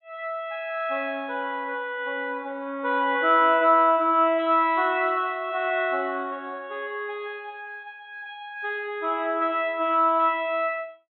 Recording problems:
low-pass filter; nothing above 3.9 kHz

